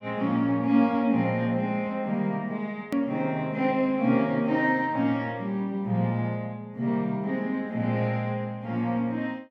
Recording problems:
edit click; at 3 s

